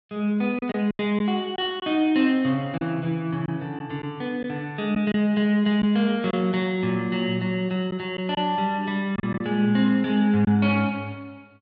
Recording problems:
lost packets; 4% of the sound replaced, filled with silence

